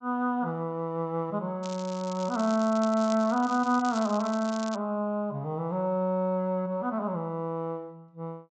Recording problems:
treble cut off; nothing above 8 kHz
crackle; from 1.5 to 5 s; loose cable, SNR 16 dB

